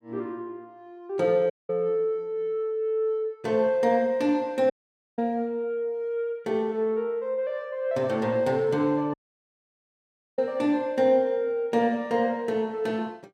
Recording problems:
audio cutting out; at 1.5 s, at 4.5 s and at 9 s for 1 s

